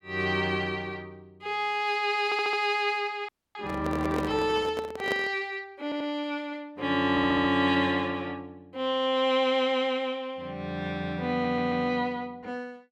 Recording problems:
stutter; 4 times, first at 2.5 s
frozen audio; at 3.5 s
microphone handling noise; from 3.5 to 5.5 s; peak 0 dB vs average level

